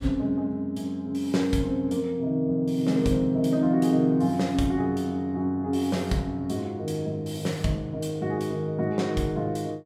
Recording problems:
none

